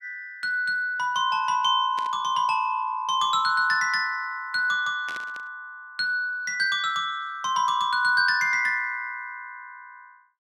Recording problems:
static burst; at 2 s and at 5 s; peak -10 dB vs average level

